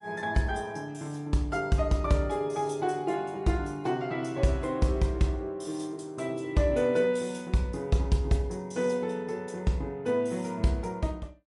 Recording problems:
lossy codec; MP3, log-spectral distance 2 dB, nothing above 10.7 kHz

